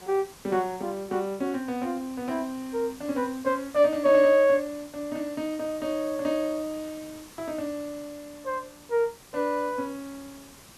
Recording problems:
hiss; slope -2 dB per octave, SNR 20 dB

